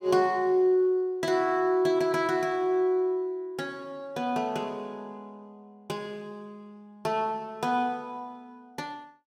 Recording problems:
none

